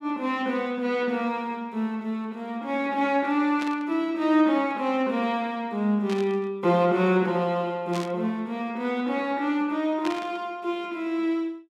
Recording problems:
burst of static; 4 times, first at 3.5 s; peak -5 dB vs average level

